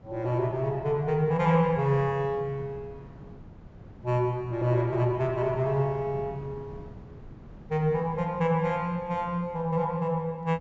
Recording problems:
treble cut off; nothing above 7.5 kHz
wind on the microphone; below 260 Hz, SNR 19 dB

